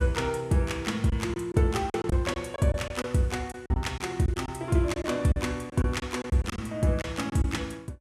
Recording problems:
codec artefacts; Vorbis, log-spectral distance 2 dB, nothing above 13.5 kHz
lost packets; 9% of the sound replaced, filled with silence

